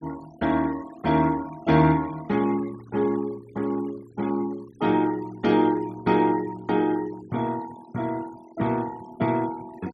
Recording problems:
noise reduction artefacts; signal-to-artefact ratio 22 dB

